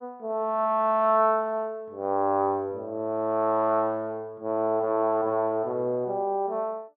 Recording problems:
none

